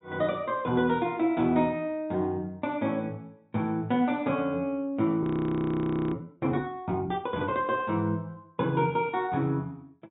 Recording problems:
treble cut off; nothing above 4 kHz
audio freezing; at 5 s for 1 s

